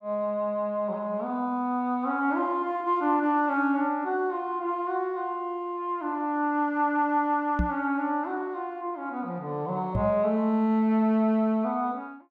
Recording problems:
knock on the microphone; at 7.5 s and at 10 s; peak +4 dB vs average level

